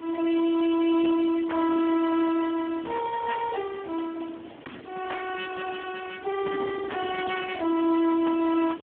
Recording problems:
telephone audio; 220 Hz to 3.4 kHz, Speex
background hiss; SNR 27 dB
wind noise; below 480 Hz, SNR 18 dB

